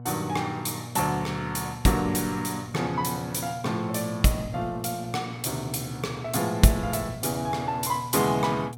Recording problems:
mains hum; 60 Hz, harmonics up to 720 Hz, SNR 13 dB

